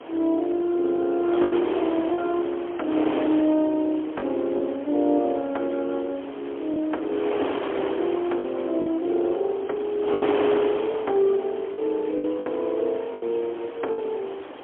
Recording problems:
phone line; 240 Hz to 3.9 kHz, AMR-NB, then MP3
background hiss; SNR 25 dB
wind on the microphone; below 990 Hz, SNR 8 dB
lost packets; 5% of the sound replaced, filled with the last packet

